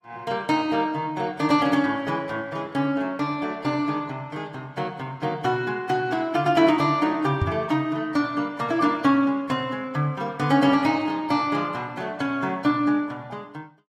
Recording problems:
lossy codec; AAC, log-spectral distance 2 dB, nothing above 15.5 kHz
microphone thump; at 7.5 s; peak +3 dB vs average level

